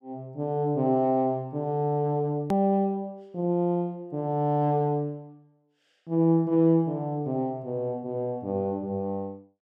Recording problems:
edit click; at 2.5 s

